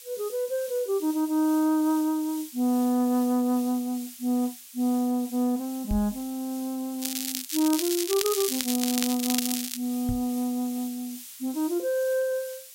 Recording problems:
background hiss; slope +6 dB per octave, SNR 14 dB
microphone thump; at 6 s and at 10 s; peak 0 dB vs average level
crackling; from 7 to 10 s; loose cable, SNR 2 dB

